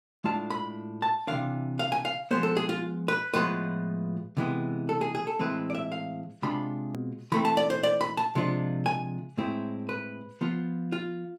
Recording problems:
hard cut with a click; at 7 s

